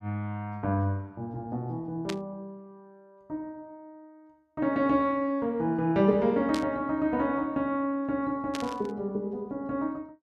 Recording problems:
static burst; at 2 s, at 6.5 s and at 8.5 s; peak -2 dB vs average level

